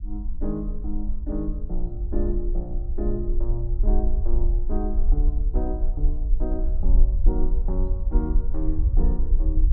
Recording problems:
rumble; below 44 Hz, SNR -6 dB

